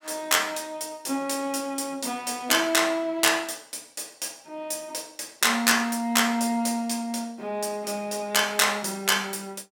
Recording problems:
none

